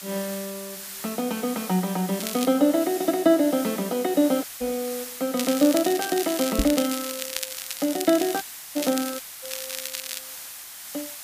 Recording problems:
hiss; SNR 11 dB
crackling; at 2 s and from 5.5 to 10 s; loose cable, SNR 8 dB
dropout; at 4.5 s, at 8.5 s and at 9 s
knock on the microphone; at 4.5 s and at 6.5 s; peak +3 dB vs average level

